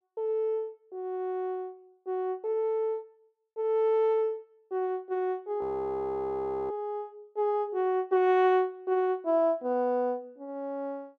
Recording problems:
frozen audio; at 5.5 s for 1 s

